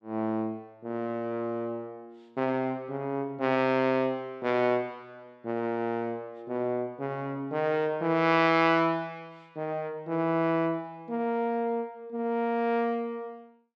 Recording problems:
none

